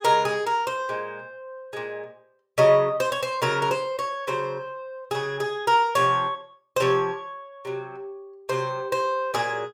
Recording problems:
none

